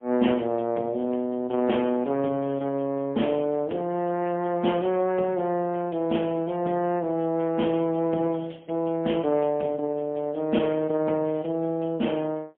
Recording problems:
phone line; 190 Hz to 3.4 kHz, AMR-NB, then MP3

